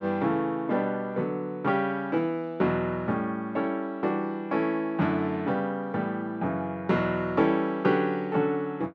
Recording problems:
none

